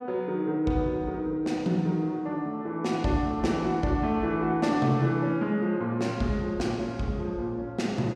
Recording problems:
none

